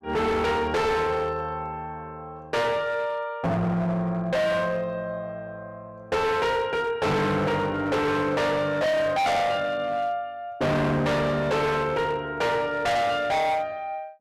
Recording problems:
distorted audio; hard clipping, signal-to-distortion ratio 6 dB

